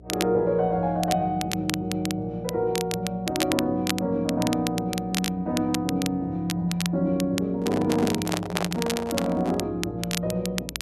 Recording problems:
electrical hum; 60 Hz, harmonics up to 660 Hz, SNR 22 dB
crackle; vinyl, SNR 7 dB
handling noise; from 7.5 to 9.5 s; peak +1 dB vs average level

